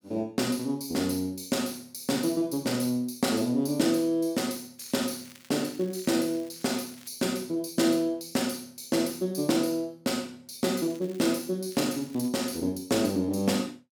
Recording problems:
crackling; from 5 to 7 s, at 11 s and at 12 s; loose cable, SNR 23 dB

